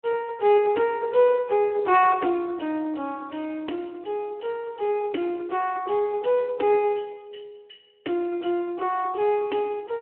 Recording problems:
telephone audio; 240 Hz to 3 kHz, Speex

